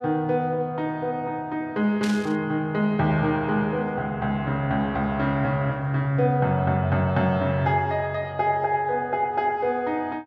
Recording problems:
static burst; at 2 s; peak -5 dB vs average level

